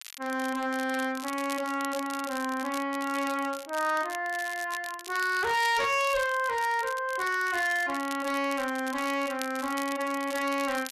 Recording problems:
distorted audio; hard clipping, signal-to-distortion ratio 11 dB
crackling; vinyl, SNR 14 dB

